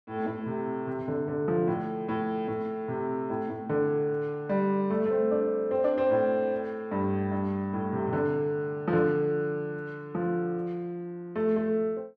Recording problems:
none

